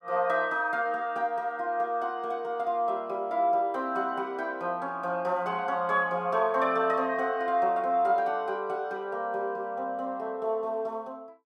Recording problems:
none

